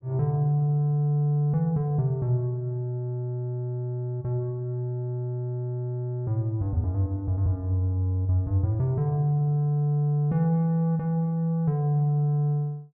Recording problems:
none

